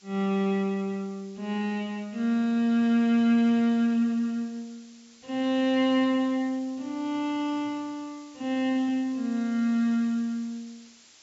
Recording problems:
treble missing; nothing above 8 kHz
background hiss; SNR 27 dB

